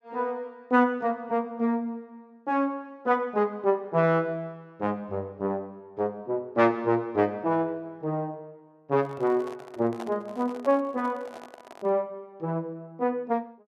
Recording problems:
microphone handling noise; from 9 to 12 s; peak -8 dB vs average level

